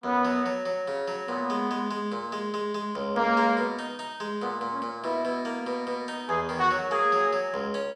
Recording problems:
none

